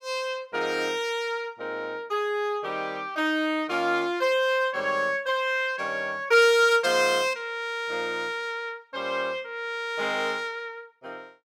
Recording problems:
none

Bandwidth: 17 kHz